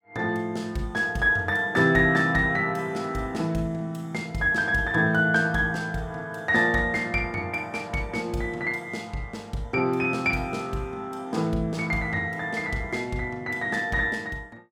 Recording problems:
none

